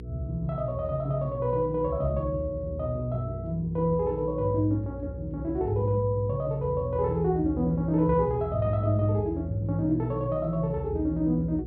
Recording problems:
treble missing; nothing above 5.5 kHz
hum; 60 Hz, harmonics up to 480 Hz, SNR 13 dB

